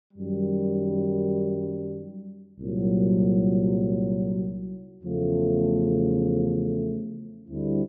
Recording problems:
none

